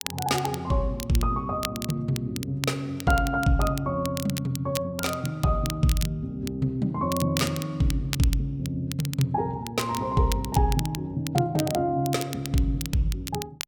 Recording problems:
crackling; vinyl, SNR 11 dB

